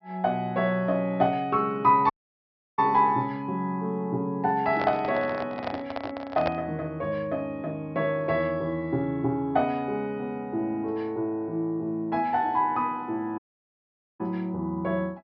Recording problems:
treble missing; nothing above 5.5 kHz
dropout; at 2 s for 0.5 s and at 13 s for 1 s
microphone handling noise; from 4.5 to 6.5 s; peak +2 dB vs average level

